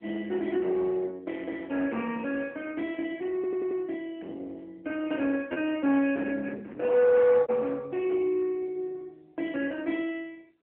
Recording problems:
telephone audio; 240 Hz to 3.3 kHz, AMR-NB
distorted audio; soft clipping, signal-to-distortion ratio 12 dB
lost packets; 1.2% of the sound replaced, filled with repeated pitch periods
stutter; at 3.5 s

